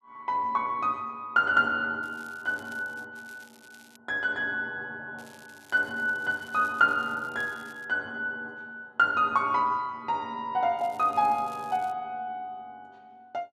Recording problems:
crackling; 4 times, first at 2 s; loose cable, SNR 27 dB

